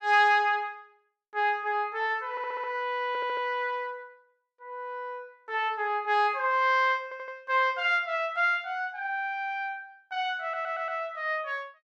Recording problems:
stutter; 4 times, first at 2.5 s

